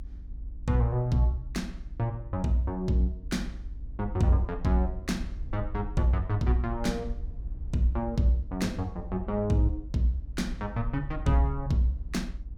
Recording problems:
hum; 50 Hz, harmonics up to 300 Hz, SNR 27 dB
low-frequency rumble; below 56 Hz, SNR 11 dB

